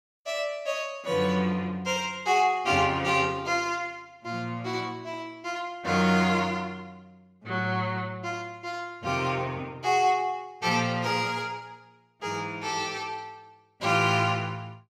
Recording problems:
none

